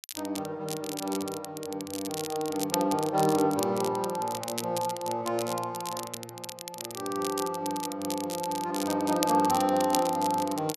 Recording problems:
crackle; vinyl, SNR 9 dB

